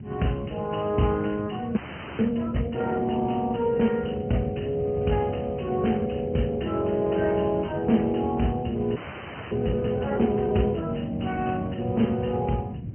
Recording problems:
treble missing; nothing above 3.1 kHz
lossy compression; Speex, log-spectral distance 5 dB
rumble; below 220 Hz, SNR 10 dB
audio freezing; at 2 s and at 9 s for 0.5 s

